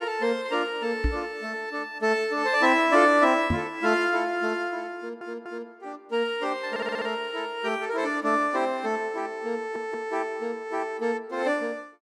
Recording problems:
microphone bump; at 1 s and at 3.5 s; peak +3 dB vs average level
audio stuttering; at 5 s, at 6.5 s and at 9.5 s

